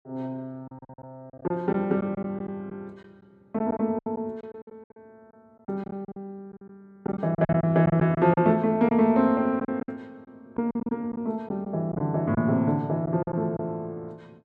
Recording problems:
packet loss; 11% of the sound replaced, filled with silence

